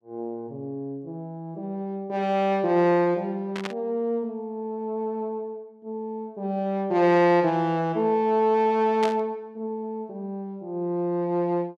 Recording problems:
burst of static; at 3.5 s and at 9 s; peak -3 dB vs average level

